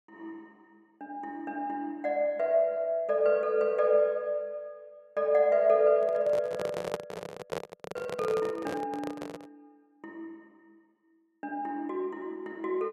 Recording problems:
microphone handling noise; from 6 to 9.5 s; peak 0 dB vs average level

